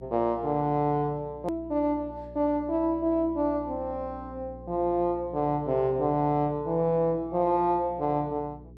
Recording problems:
hum; 60 Hz, harmonics up to 420 Hz, SNR 20 dB
hard cut with a click; at 1.5 s

